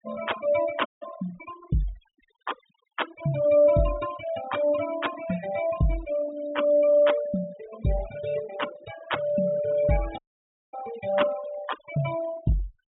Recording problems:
treble cut off; nothing above 3.8 kHz
noise reduction artefacts; signal-to-artefact ratio 14 dB
dropout; at 1 s and at 10 s for 0.5 s

